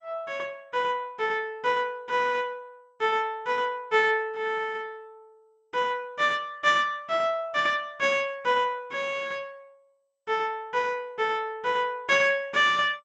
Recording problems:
lossy compression; MP2, log-spectral distance 2 dB, nothing above 7.1 kHz

